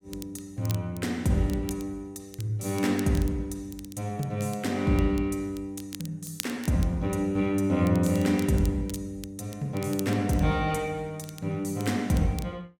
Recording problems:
crackle; vinyl, SNR 17 dB

